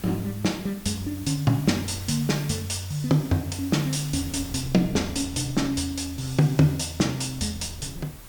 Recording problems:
hiss; slope -1 dB per octave, SNR 18 dB
wind noise; below 170 Hz, SNR 20 dB

